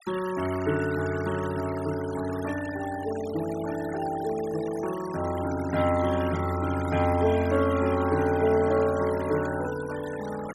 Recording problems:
noise reduction artefacts; signal-to-artefact ratio 15 dB

